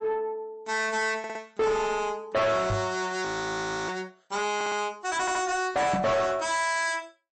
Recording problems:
lossy compression; MP3, log-spectral distance 3 dB, nothing above 8.2 kHz
distorted audio; soft clipping, signal-to-distortion ratio 5 dB
stutter; at 1 s, at 4.5 s and at 5 s
microphone thump; at 2.5 s and at 6 s; peak +4 dB vs average level
frozen audio; at 3.5 s for 0.5 s

